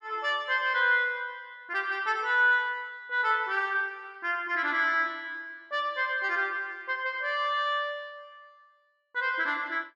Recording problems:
none

